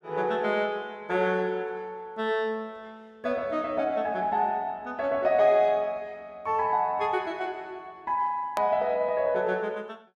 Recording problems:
click at an edit; at 8.5 s

